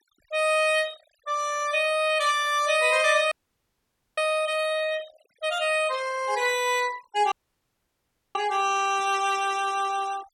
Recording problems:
denoising artefacts; signal-to-artefact ratio 20 dB
dropout; at 3.5 s for 1 s and at 7.5 s for 1 s

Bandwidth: 17 kHz